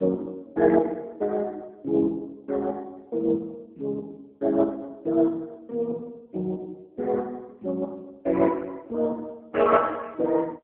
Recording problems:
telephone audio; 240 Hz to 2 kHz, AMR-NB

